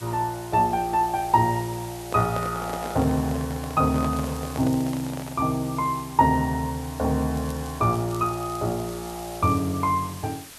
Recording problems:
hiss; slope 0 dB per octave, SNR 17 dB
handling noise; from 2 to 5.5 s; peak -4 dB vs average level
crackling; at 4 s and from 7.5 to 9.5 s; loose cable, SNR 23 dB

